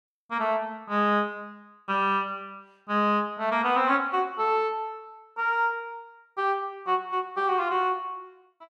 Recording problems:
none

